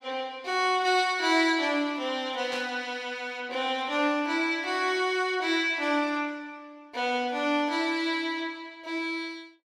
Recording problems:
static burst; at 2.5 s; peak -7 dB vs average level

